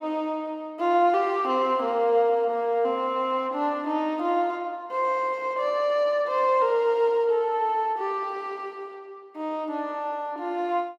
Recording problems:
none

